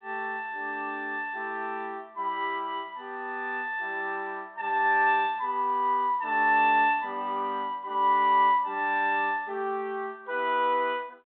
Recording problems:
telephone audio; 260 Hz to 3.9 kHz, G.726

